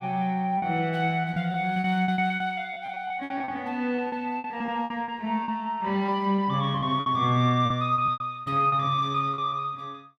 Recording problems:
packet loss; 14% of the sound replaced, filled with repeated pitch periods

